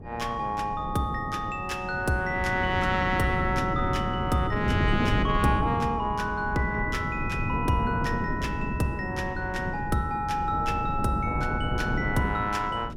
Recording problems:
wind noise; below 260 Hz, SNR 4 dB

